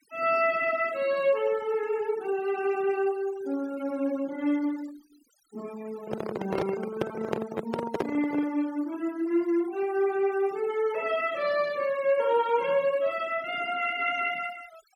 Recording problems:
denoising artefacts; signal-to-artefact ratio 20 dB
microphone handling noise; from 6 to 8.5 s; peak +3 dB vs average level

